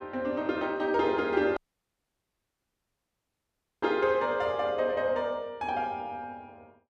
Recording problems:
audio cutting out; at 1.5 s for 2.5 s

